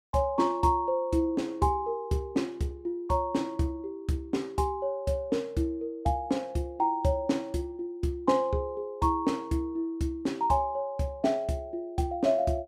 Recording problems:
none

